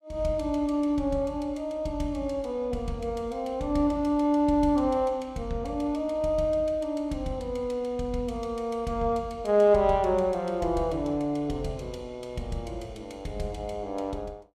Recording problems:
none

